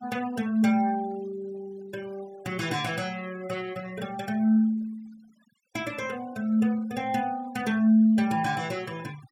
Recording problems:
noise reduction artefacts; signal-to-artefact ratio 22 dB

